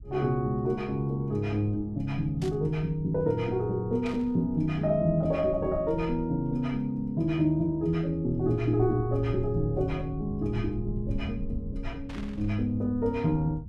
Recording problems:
low-frequency rumble; below 110 Hz, SNR 13 dB
burst of static; at 2.5 s, at 4 s and at 12 s; peak -11 dB vs average level

